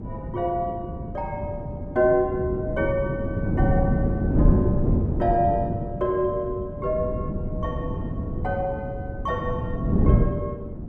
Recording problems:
wind noise; below 230 Hz, SNR -1 dB

